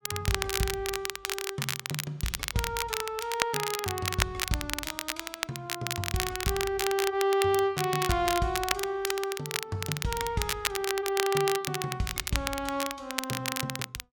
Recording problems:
crackling; vinyl, SNR 2 dB

